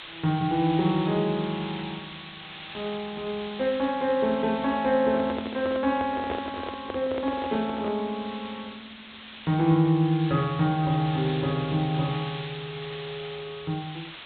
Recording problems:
treble cut off; nothing above 4 kHz
hiss; SNR 13 dB
handling noise; from 5 to 8 s; peak -1 dB vs average level

